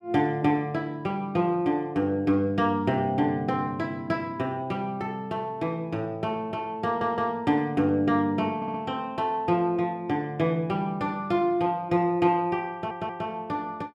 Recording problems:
stutter; at 7 s, at 8.5 s and at 13 s

